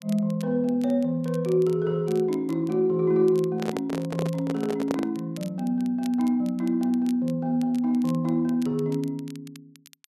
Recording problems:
crackling; vinyl, SNR 25 dB
handling noise; from 3.5 to 5 s; peak 0 dB vs average level

